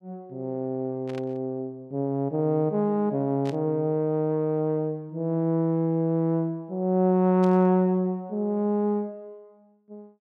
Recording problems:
static burst; at 1 s, at 3.5 s and at 7.5 s; peak -13 dB vs average level

